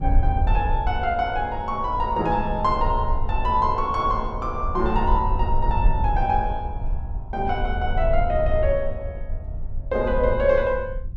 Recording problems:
rumble; below 66 Hz, SNR 5 dB

